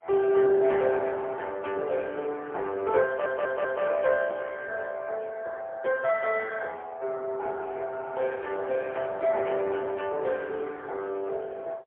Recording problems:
phone line; 340 Hz to 3.6 kHz, AMR-NB, then MP3
audio stuttering; at 3 s

